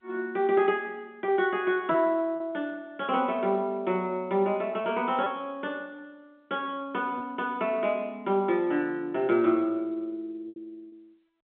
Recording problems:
telephone audio; 220 Hz to 3.5 kHz, G.711
packet loss; 3% of the sound replaced, filled with repeated pitch periods

